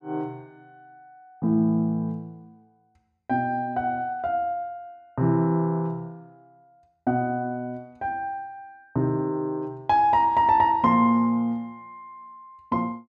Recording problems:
none

